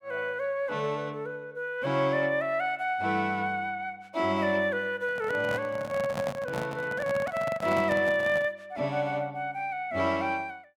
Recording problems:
microphone handling noise; from 5 to 8.5 s; peak -2 dB vs average level

